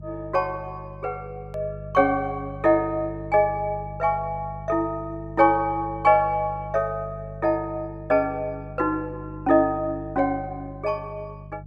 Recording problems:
hum; 50 Hz, harmonics up to 400 Hz, SNR 14 dB
click at an edit; at 1.5 s

